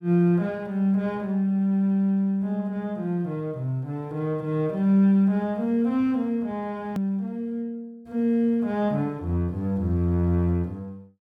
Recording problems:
click at an edit; at 7 s

